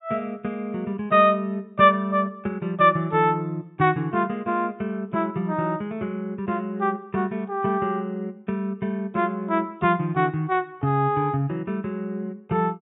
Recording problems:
low-pass filter; nothing above 4 kHz

